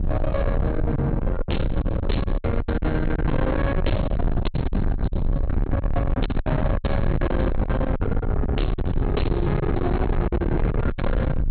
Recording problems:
low-pass filter; nothing above 4.2 kHz
distortion; soft clipping, signal-to-distortion ratio 7 dB
rumble; below 180 Hz, SNR 0 dB
packet loss; 9% of the sound replaced, filled with silence

